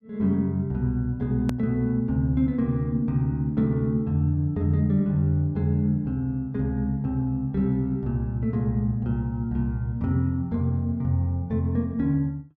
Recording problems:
edit click; at 1.5 s

